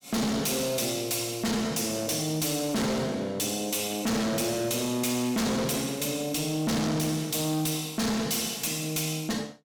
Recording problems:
distorted audio; hard clipping, uneven, signal-to-distortion ratio 6 dB

